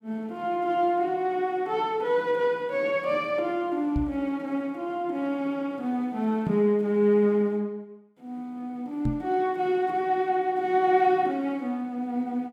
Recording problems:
microphone bump; at 4 s, at 6.5 s and at 9 s; peak +1 dB vs average level

